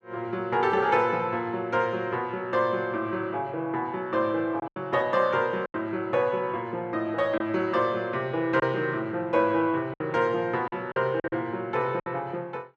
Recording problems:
packet loss; 4% of the sound replaced, filled with silence

